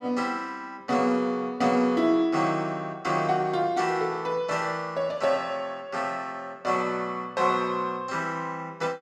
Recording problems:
none

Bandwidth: 13.5 kHz